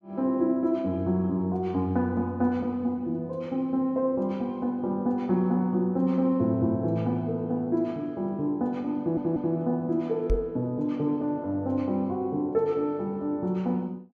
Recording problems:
audio stuttering; at 9 s
microphone bump; at 10 s; peak +3 dB vs average level

